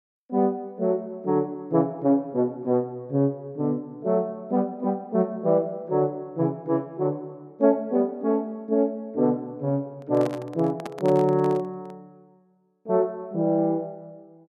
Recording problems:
microphone handling noise; from 10 to 12 s; peak -6 dB vs average level

